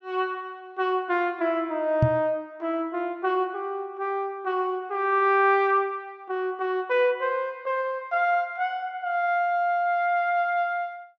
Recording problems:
microphone thump; at 2 s; peak +7 dB vs average level

